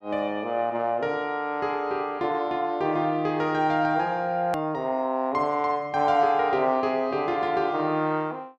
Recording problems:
hard cut with a click; at 4.5 s

